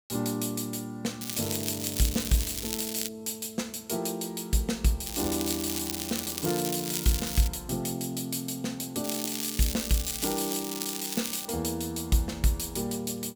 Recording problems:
crackling; from 1 to 3 s, from 5 to 7.5 s and from 9 to 11 s; loose cable, SNR 3 dB

